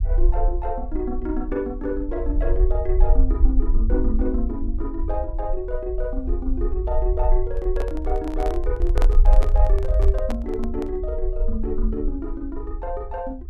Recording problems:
low-frequency rumble; below 48 Hz, SNR -3 dB
microphone handling noise; from 7.5 to 11 s; peak +3 dB vs average level

